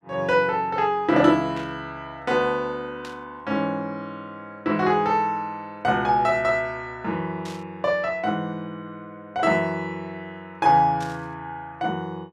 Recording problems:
burst of static; 4 times, first at 1.5 s; peak -12 dB vs average level

